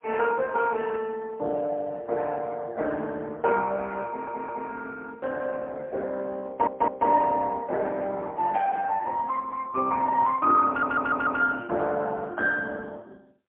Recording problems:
phone line; 320 Hz to 2.8 kHz, AMR-NB, then MP3
audio stuttering; at 4 s, at 6.5 s and at 11 s

